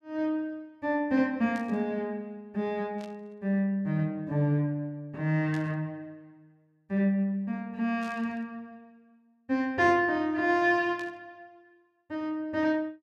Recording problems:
burst of static; 5 times, first at 1.5 s; peak -14 dB vs average level

